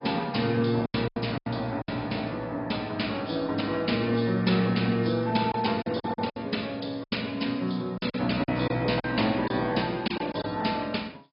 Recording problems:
low-pass filter; nothing above 5.2 kHz
lossy codec; AAC, log-spectral distance 4 dB
packet loss; 8% of the sound replaced, filled with silence

